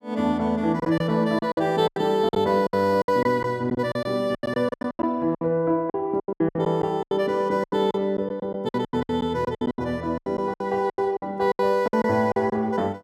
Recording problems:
lost packets; 17% of the sound replaced, filled with silence

